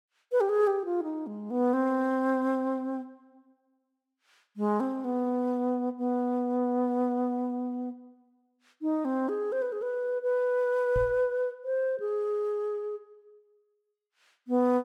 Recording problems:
microphone thump; at 11 s; peak -2 dB vs average level

